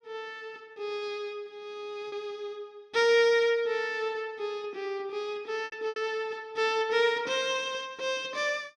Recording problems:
packet loss; 3% of the sound replaced, filled with repeated pitch periods

